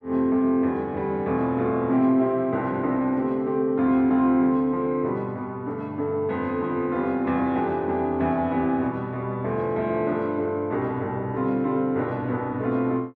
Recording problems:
none

